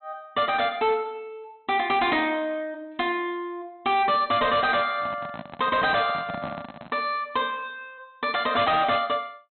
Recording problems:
treble missing; nothing above 4.2 kHz
distortion; hard clipping, signal-to-distortion ratio 11 dB
microphone handling noise; from 5 to 7 s; peak -5 dB vs average level

